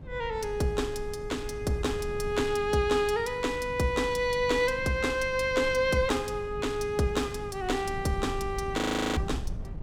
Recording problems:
hum; 50 Hz, harmonics up to 850 Hz, SNR 19 dB
wind on the microphone; below 110 Hz, SNR 14 dB
frozen audio; at 9 s

